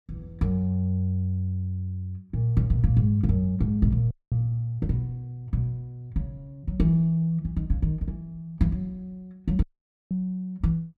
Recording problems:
dropout; at 4 s and at 9.5 s

